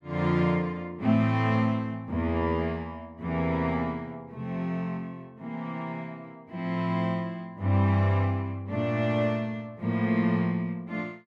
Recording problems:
none

